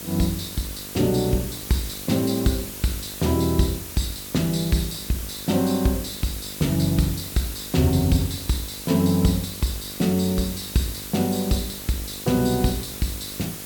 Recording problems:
hum; 50 Hz, harmonics up to 1.3 kHz, SNR 19 dB
hiss; slope 0 dB per octave, SNR 9 dB

